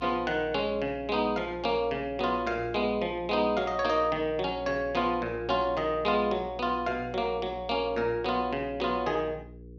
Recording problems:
hum; 60 Hz, harmonics up to 480 Hz, SNR 18 dB

